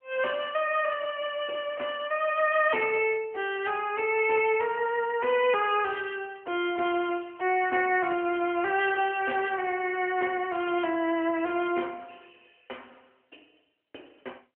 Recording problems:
phone line; 280 Hz to 3.1 kHz, AMR-NB

